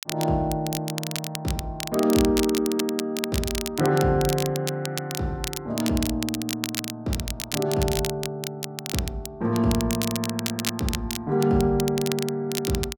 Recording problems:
crackling; vinyl, SNR 6 dB

